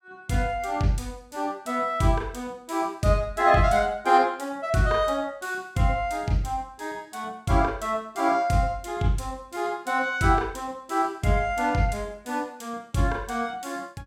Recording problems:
none

